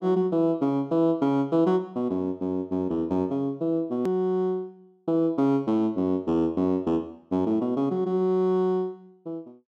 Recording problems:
click at an edit; at 4 s

